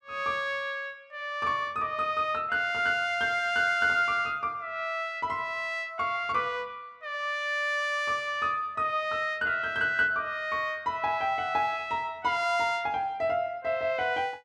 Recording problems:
none

